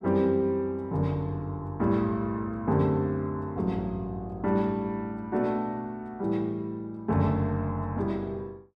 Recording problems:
none

